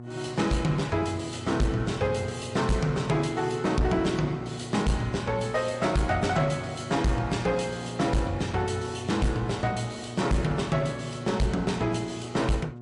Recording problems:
codec artefacts; MP3, log-spectral distance 2 dB, nothing above 11 kHz
distorted audio; hard clipping, uneven, signal-to-distortion ratio 10 dB
hum; 60 Hz, harmonics up to 1.1 kHz, SNR 12 dB

